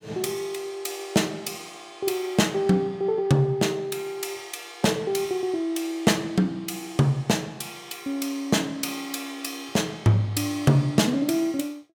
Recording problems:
none

